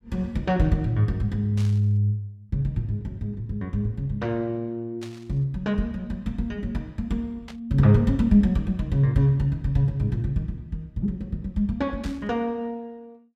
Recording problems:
static burst; 4 times, first at 1.5 s; peak -12 dB vs average level

